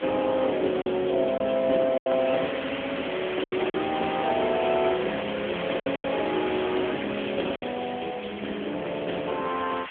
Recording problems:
telephone audio; 280 Hz to 3.5 kHz, AMR-NB
hiss; SNR 10 dB
lost packets; 5% of the sound replaced, filled with silence

